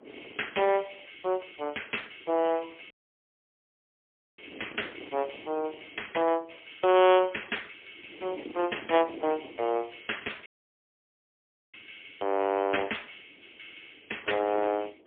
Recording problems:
phone line; 260 Hz to 3.4 kHz, AMR-NB, then MP3
wind noise; below 530 Hz, SNR 19 dB
dropout; at 3 s for 1.5 s and at 10 s for 1.5 s

